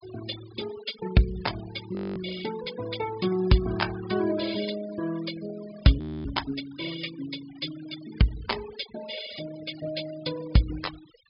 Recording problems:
treble missing; nothing above 5.5 kHz
denoising artefacts; signal-to-artefact ratio 15 dB
audio freezing; at 2 s and at 6 s

